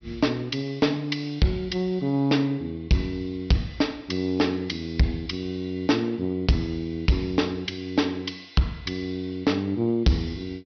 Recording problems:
treble missing; nothing above 5.8 kHz
distortion; hard clipping, signal-to-distortion ratio 11 dB

